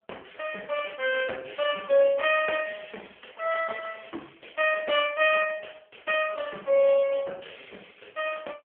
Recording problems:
phone line; 390 Hz to 3.3 kHz, AMR-NB

